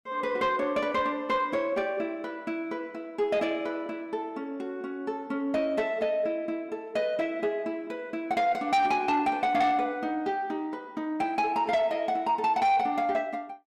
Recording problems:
distorted audio; soft clipping, signal-to-distortion ratio 12 dB

